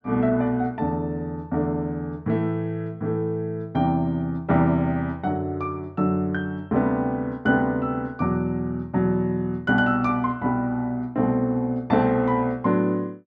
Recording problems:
none

